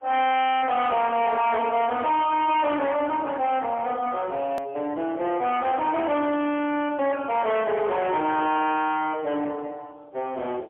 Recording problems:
phone line; 260 Hz to 3.8 kHz, AMR-NB, then MP3
distortion; soft clipping, signal-to-distortion ratio 7 dB
click at an edit; at 4.5 s

